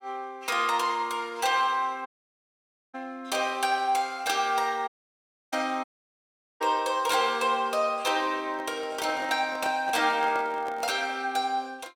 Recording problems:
dropout; at 2 s for 1 s, at 5 s for 0.5 s and at 6 s for 1 s
microphone handling noise; from 8.5 to 11 s; peak -5 dB vs average level

